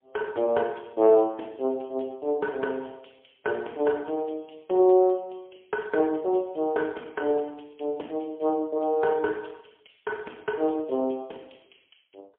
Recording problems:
telephone audio; 280 Hz to 2.8 kHz, AMR-NB, then MP3

